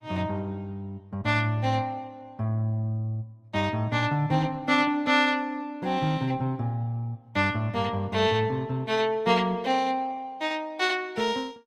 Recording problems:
codec artefacts; Opus, log-spectral distance 2 dB, nothing above 18.3 kHz

